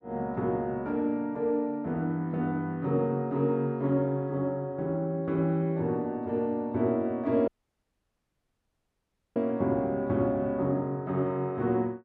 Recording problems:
audio cutting out; at 7.5 s for 2 s

